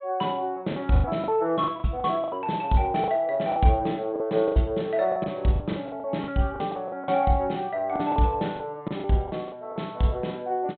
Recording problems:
low-pass filter; nothing above 4 kHz
lost packets; 12% of the sound replaced, filled with the last packet

